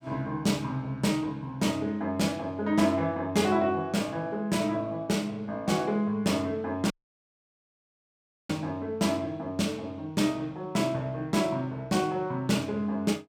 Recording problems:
audio cutting out; at 7 s for 1.5 s

